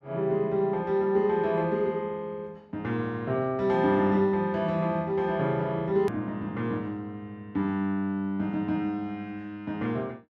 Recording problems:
click at an edit; at 6 s

